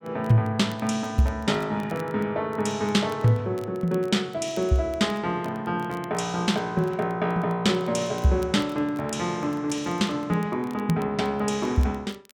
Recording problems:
crackle; vinyl, SNR 27 dB

